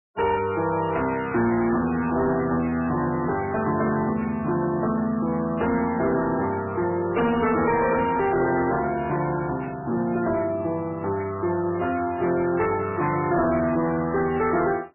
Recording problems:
codec artefacts; MP3, log-spectral distance 4 dB, nothing above 2.8 kHz
distortion; hard clipping, signal-to-distortion ratio 10 dB

